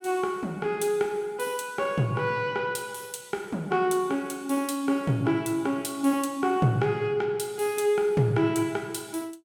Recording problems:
none

